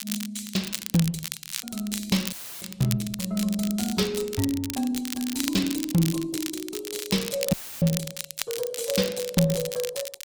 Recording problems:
lossy codec; Opus, log-spectral distance 4 dB, nothing above 19 kHz
crackle; vinyl, SNR 6 dB
dropout; at 2.5 s and at 7.5 s; filled with static

